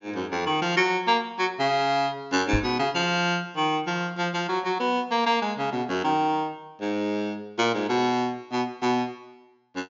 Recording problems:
treble missing; nothing above 7.1 kHz
knock on the microphone; at 2.5 s; peak +2 dB vs average level

